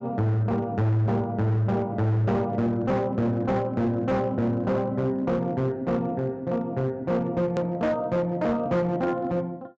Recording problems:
treble cut off; nothing above 8 kHz
distorted audio; hard clipping, signal-to-distortion ratio 10 dB
click at an edit; at 7.5 s

